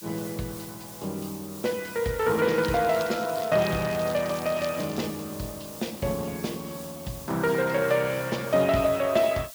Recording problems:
lossy compression; Speex, log-spectral distance 6 dB
background hiss; slope +3 dB per octave, SNR 15 dB
crackling; from 2.5 to 5 s; loose cable, SNR 16 dB

